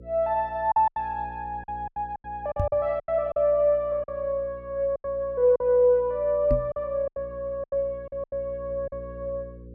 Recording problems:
hum; 60 Hz, harmonics up to 540 Hz, SNR 20 dB
packet loss; 11% of the sound replaced, filled with silence
microphone thump; at 2.5 s and at 6.5 s; peak +2 dB vs average level

